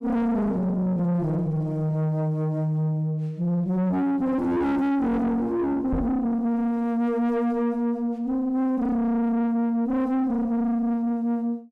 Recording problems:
distortion; soft clipping, signal-to-distortion ratio 6 dB
microphone bump; at 6 s; peak +2 dB vs average level

